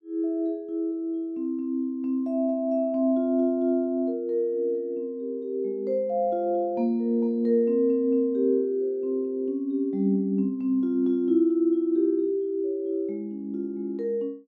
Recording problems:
none

